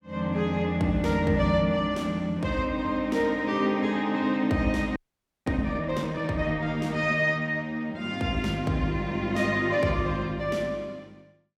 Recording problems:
audio freezing; at 5 s for 0.5 s

